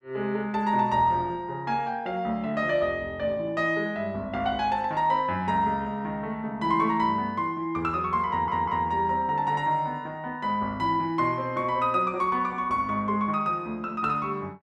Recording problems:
audio stuttering; at 8.5 s

